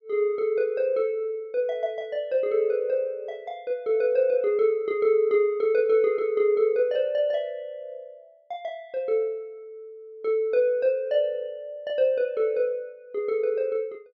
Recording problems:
none

